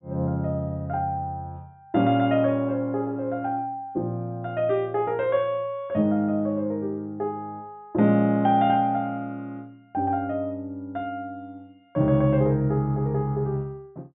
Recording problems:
low-pass filter; nothing above 4 kHz

